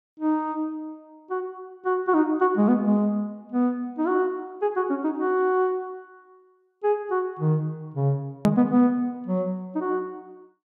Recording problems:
click at an edit; at 8.5 s

